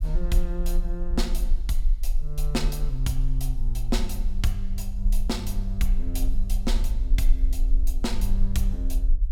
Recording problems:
rumble; below 38 Hz, strongest tone 26 Hz, SNR -4 dB

